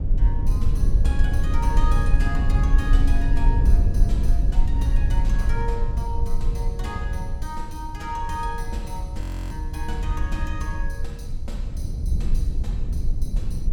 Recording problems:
rumble; below 60 Hz, SNR -9 dB
frozen audio; at 9 s

